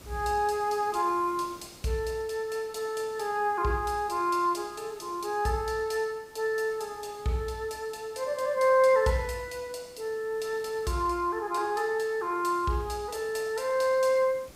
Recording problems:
hiss; SNR 24 dB

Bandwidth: 15.5 kHz